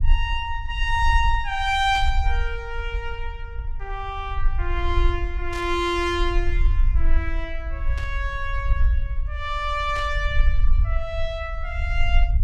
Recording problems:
rumble; below 54 Hz, SNR 1 dB
burst of static; 4 times, first at 2 s; peak -7 dB vs average level

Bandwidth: 15 kHz